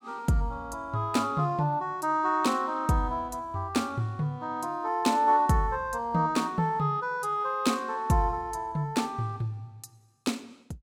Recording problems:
none

